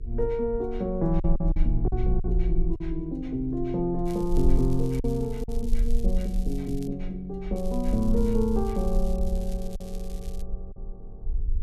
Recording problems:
electrical hum; 50 Hz, harmonics up to 450 Hz, SNR 26 dB
rumble; below 44 Hz, strongest tone 18 Hz, SNR 3 dB
lost packets; 4% of the sound replaced, filled with silence
crackling; from 4 to 7 s and from 7.5 to 10 s; loose cable, SNR 22 dB

